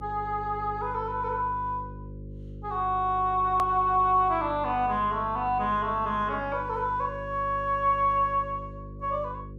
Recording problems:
hum; 50 Hz, harmonics up to 550 Hz, SNR 14 dB
click at an edit; at 3.5 s

